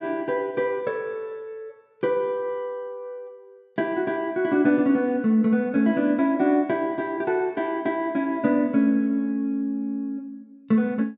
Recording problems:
none

